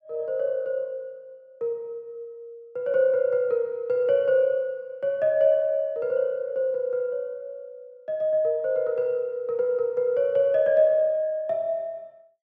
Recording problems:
none

